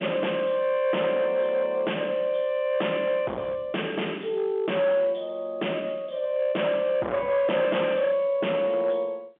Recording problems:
telephone audio; 340 Hz to 3.5 kHz, G.711
distorted audio; hard clipping, uneven, signal-to-distortion ratio 8 dB

